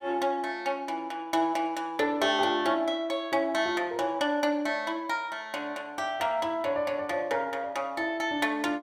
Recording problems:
none

